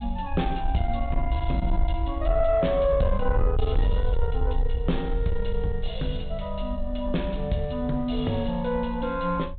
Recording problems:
treble missing; nothing above 4 kHz
distorted audio; soft clipping, signal-to-distortion ratio 12 dB
low-frequency rumble; below 62 Hz, SNR 3 dB

